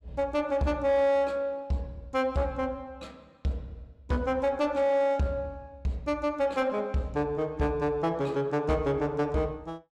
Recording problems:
distortion; soft clipping, signal-to-distortion ratio 11 dB

